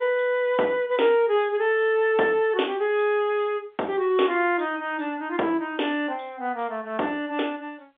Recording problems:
telephone audio; 300 Hz to 3.6 kHz, G.711

